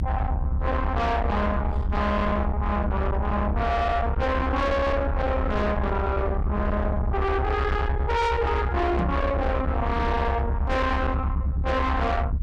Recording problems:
distorted audio; soft clipping, signal-to-distortion ratio 5 dB
rumble; below 350 Hz, SNR 2 dB
microphone thump; at 9 s; peak +3 dB vs average level

